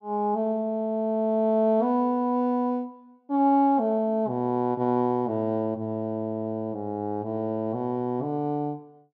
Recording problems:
none

